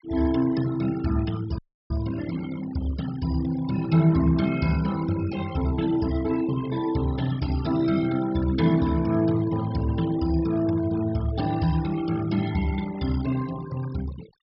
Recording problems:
treble missing; nothing above 5.4 kHz
noise reduction artefacts; signal-to-artefact ratio 15 dB
dropout; at 1.5 s

